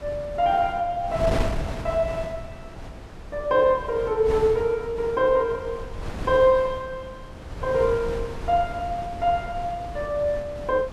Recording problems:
wind noise; below 440 Hz, SNR 11 dB

